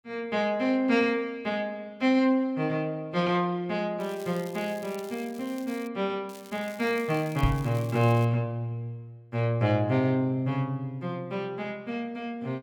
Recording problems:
crackling; from 4 to 6 s and from 6.5 to 8.5 s; loose cable, SNR 21 dB
microphone thump; at 7.5 s; peak +6 dB vs average level

